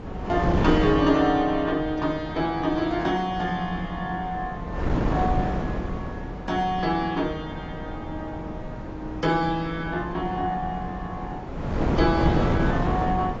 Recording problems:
codec artefacts; AAC, log-spectral distance 2 dB, nothing above 7.1 kHz
wind noise; below 480 Hz, SNR 4 dB

